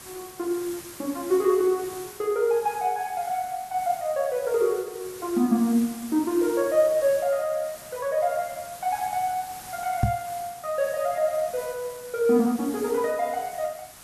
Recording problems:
hiss; slope -1 dB per octave, SNR 16 dB
microphone thump; at 10 s; peak +6 dB vs average level

